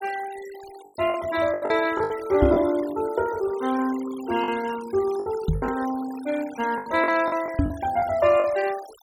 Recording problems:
denoising artefacts; signal-to-artefact ratio 18 dB
packet loss; 8% of the sound replaced, filled with the last packet
microphone bump; at 2.5 s, at 5.5 s and at 7.5 s; peak +6 dB vs average level

